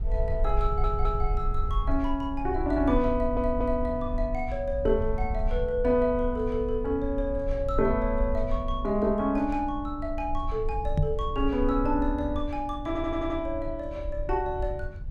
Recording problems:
low-frequency rumble; below 58 Hz, SNR 6 dB
audio stuttering; at 0.5 s, at 3 s and at 13 s
microphone thump; at 11 s; peak +7 dB vs average level

